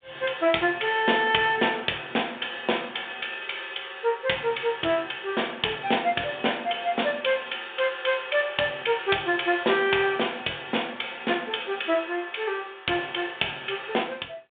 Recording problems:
telephone audio; 280 Hz to 3.6 kHz, G.726

